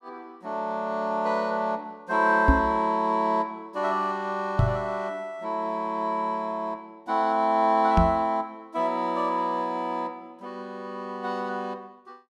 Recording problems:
microphone bump; at 2.5 s, at 4.5 s and at 8 s; peak +9 dB vs average level

